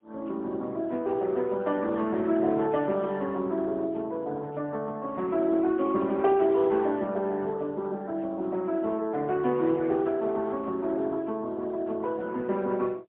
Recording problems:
phone line; 220 Hz to 3.6 kHz, AMR-NB, then MP3

